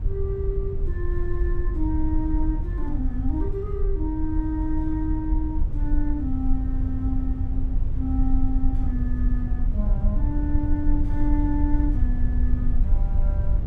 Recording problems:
rumble; below 62 Hz, SNR -4 dB

